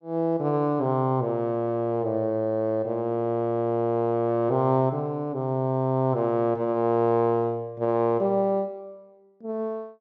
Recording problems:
none

